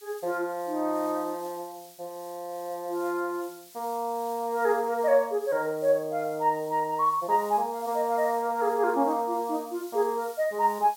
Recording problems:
background hiss; slope +3 dB per octave, SNR 21 dB

